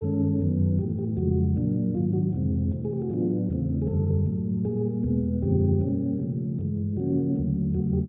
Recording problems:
low-pass filter; nothing above 4 kHz

